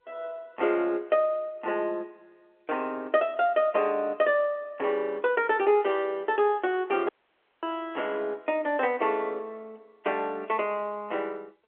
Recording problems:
phone line; 300 Hz to 3.4 kHz, G.711
audio cutting out; at 7 s for 0.5 s

